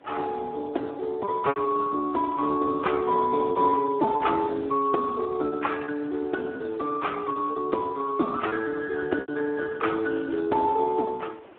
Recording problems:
telephone audio; 240 Hz to 2 kHz, Speex
wind noise; below 1.3 kHz, SNR 25 dB
lost packets; 5% of the sound replaced, filled with repeated pitch periods

